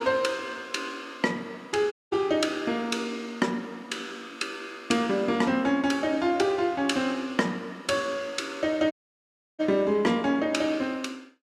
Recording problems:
audio cutting out; at 2 s and at 9 s for 0.5 s

